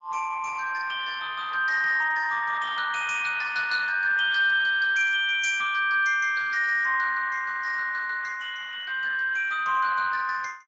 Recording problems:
lossy compression; Speex, log-spectral distance 4 dB

